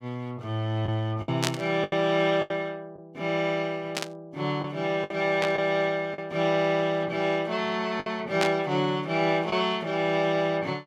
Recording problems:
lost packets; 4% of the sound replaced, filled with the last packet
static burst; 4 times, first at 1.5 s; peak +4 dB vs average level

